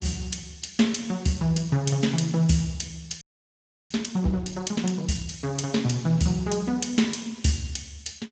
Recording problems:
lossy compression; Speex, log-spectral distance 5 dB, nothing above 7.6 kHz
audio freezing; at 3 s for 0.5 s

